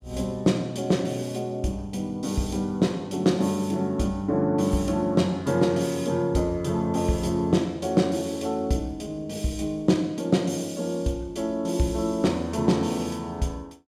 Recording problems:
none

